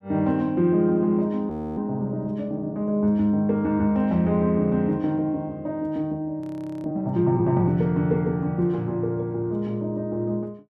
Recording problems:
frozen audio; at 1.5 s and at 6.5 s

